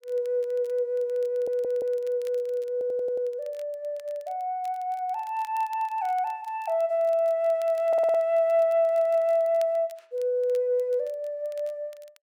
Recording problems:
crackle; vinyl, SNR 30 dB
audio stuttering; 4 times, first at 1.5 s

